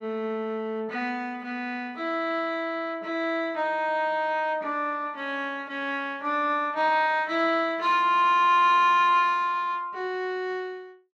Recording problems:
none

